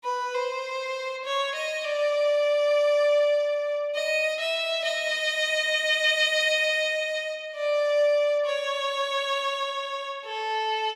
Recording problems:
none

